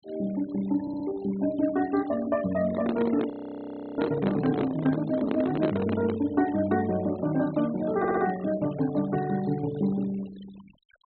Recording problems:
low-pass filter; nothing above 4.2 kHz
noise reduction artefacts; signal-to-artefact ratio 20 dB
audio stuttering; at 1 s and at 8 s
handling noise; from 2.5 to 6 s; peak +3 dB vs average level
audio freezing; at 3.5 s for 0.5 s

